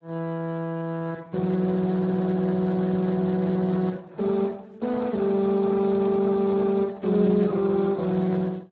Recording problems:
lossy compression; AAC, then Speex, log-spectral distance 3 dB

